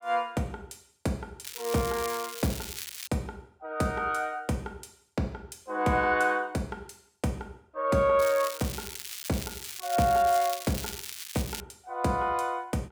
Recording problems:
crackle; from 1.5 to 3 s and from 8 to 12 s; loose cable, SNR 8 dB

